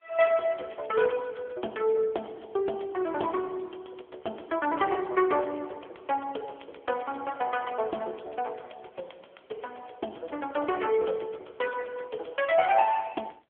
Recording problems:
telephone audio; 340 Hz to 3.3 kHz, AMR-NB

